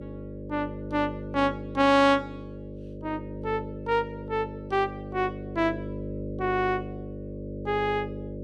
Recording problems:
hum; 50 Hz, harmonics up to 600 Hz, SNR 10 dB

